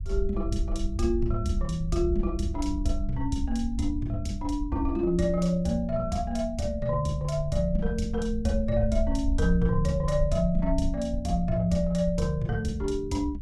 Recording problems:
rumble; below 62 Hz, SNR 6 dB

